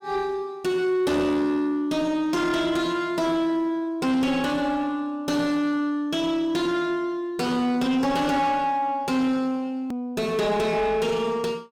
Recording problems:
distorted audio; soft clipping, signal-to-distortion ratio 10 dB
edit click; at 10 s

